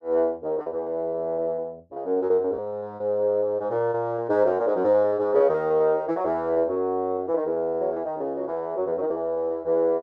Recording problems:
lost packets; 12% of the sound replaced, filled with repeated pitch periods

